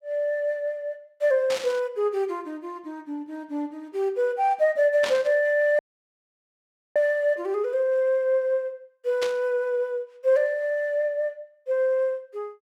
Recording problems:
static burst; at 1.5 s, at 5 s and at 9 s; peak -3 dB vs average level
dropout; at 6 s for 1 s

